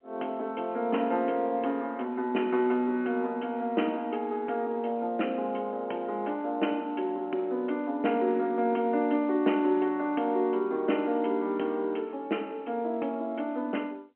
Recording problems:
phone line; 220 Hz to 3.2 kHz, G.711

